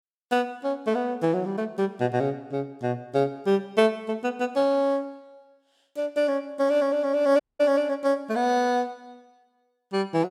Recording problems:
dropout; at 7.5 s

